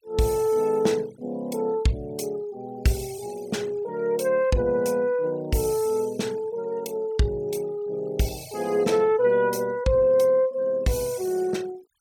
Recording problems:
noise reduction artefacts; signal-to-artefact ratio 24 dB

